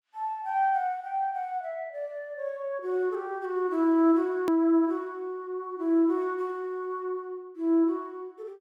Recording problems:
click at an edit; at 4.5 s

